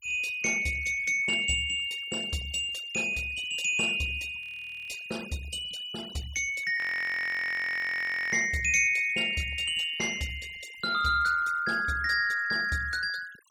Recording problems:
denoising artefacts; signal-to-artefact ratio 20 dB
frozen audio; at 4.5 s and at 7 s for 1.5 s

